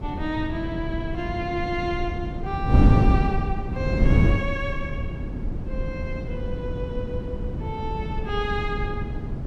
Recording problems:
wind on the microphone; below 190 Hz, SNR -4 dB

